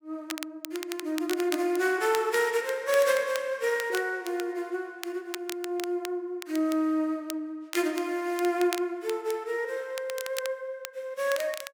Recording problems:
crackling; vinyl, SNR 12 dB

